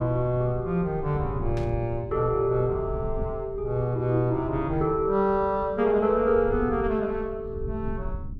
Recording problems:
rumble; below 110 Hz, SNR 12 dB
burst of static; at 1.5 s; peak -14 dB vs average level

